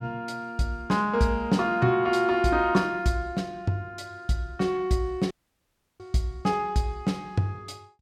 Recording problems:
dropout; at 5.5 s for 0.5 s

